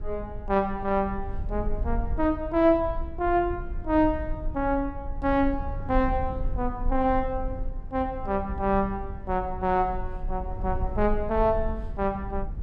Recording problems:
low-frequency rumble; below 60 Hz, SNR 8 dB

